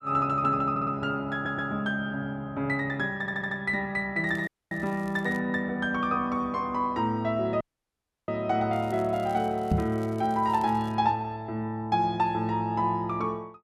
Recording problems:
stutter; at 0.5 s, at 1.5 s and at 3 s
crackle; from 4.5 to 5.5 s and from 8.5 to 11 s; loose cable, SNR 27 dB
audio cutting out; at 4.5 s and at 7.5 s for 0.5 s
microphone thump; at 9.5 s; peak +6 dB vs average level

